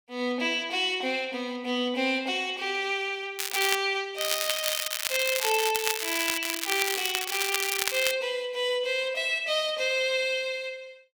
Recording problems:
crackle; at 3.5 s, from 4 to 6.5 s and from 6.5 to 8 s; loose cable, SNR 1 dB

